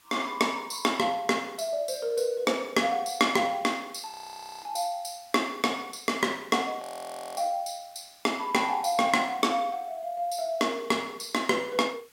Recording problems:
background hiss; SNR 28 dB
frozen audio; at 4 s for 0.5 s and at 7 s for 0.5 s

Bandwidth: 16.5 kHz